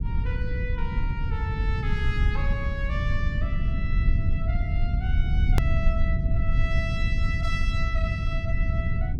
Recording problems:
rumble; below 90 Hz, SNR -8 dB
click at an edit; at 5.5 s

